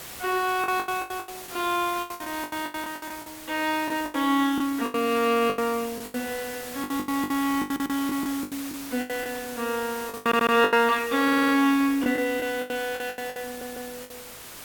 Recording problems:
background hiss; slope -2 dB per octave, SNR 13 dB
packet loss; 17% of the sound replaced, filled with the last packet
audio stuttering; 4 times, first at 7.5 s

